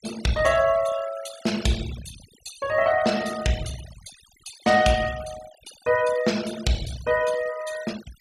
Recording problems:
noise reduction artefacts; signal-to-artefact ratio 15 dB

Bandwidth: 14.5 kHz